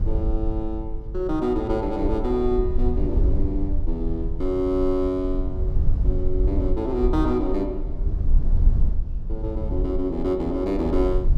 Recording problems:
low-frequency rumble; below 62 Hz, SNR 2 dB

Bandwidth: 13 kHz